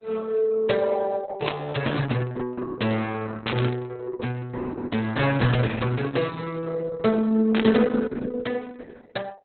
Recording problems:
codec artefacts; Opus, log-spectral distance 4 dB, nothing above 4 kHz
burst of static; at 1.5 s, at 3.5 s and at 7.5 s; peak +4 dB vs average level

